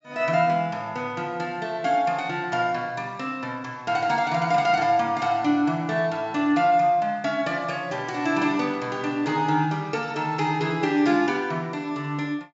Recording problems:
treble missing; nothing above 8 kHz

